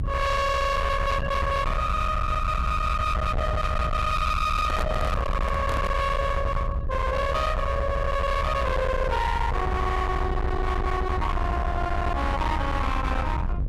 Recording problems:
distorted audio; hard clipping, uneven, signal-to-distortion ratio 6 dB
mains hum; 50 Hz, harmonics up to 1.8 kHz, SNR 21 dB
rumble; below 720 Hz, SNR 2 dB
handling noise; from 4.5 to 6 s; peak -1 dB vs average level

